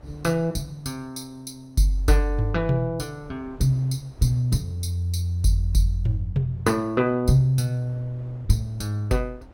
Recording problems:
wind on the microphone; below 400 Hz, SNR 27 dB

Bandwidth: 16.5 kHz